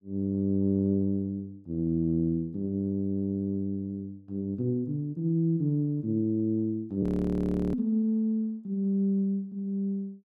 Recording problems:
frozen audio; at 7 s for 0.5 s

